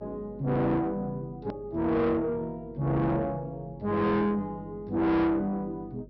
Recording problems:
low-pass filter; nothing above 5.7 kHz
distorted audio; soft clipping, signal-to-distortion ratio 6 dB
electrical hum; 50 Hz, harmonics up to 550 Hz, SNR 22 dB
hard cut with a click; at 1.5 s

